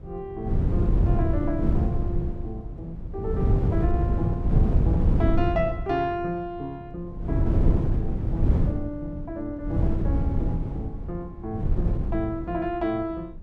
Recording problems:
wind on the microphone; below 140 Hz, SNR -5 dB

